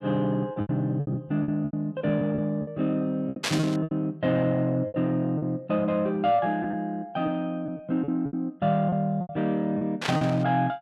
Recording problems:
packet loss; 11% of the sound replaced, filled with repeated pitch periods
burst of static; at 3.5 s and at 10 s; peak +3 dB vs average level

